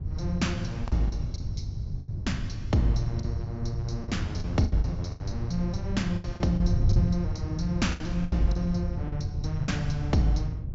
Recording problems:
treble missing; nothing above 8 kHz
wind noise; below 120 Hz, SNR 2 dB
packet loss; 9% of the sound replaced, filled with the last packet

